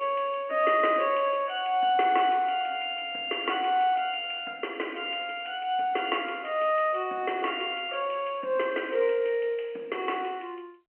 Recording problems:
telephone audio; 240 Hz to 3.1 kHz, G.711

